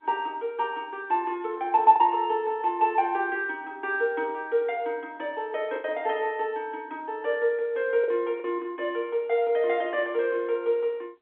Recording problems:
telephone audio; 300 Hz to 3.5 kHz, G.711
packet loss; 1.8% of the sound replaced, filled with the last packet

